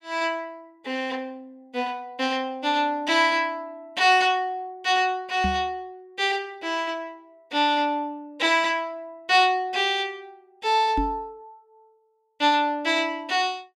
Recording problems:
knock on the microphone; at 5.5 s and at 11 s; peak 0 dB vs average level

